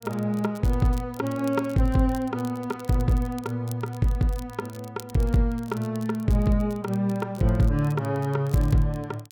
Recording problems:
crackle; vinyl, SNR 23 dB

